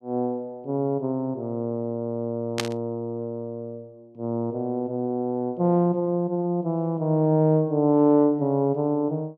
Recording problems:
burst of static; at 2.5 s; peak +3 dB vs average level

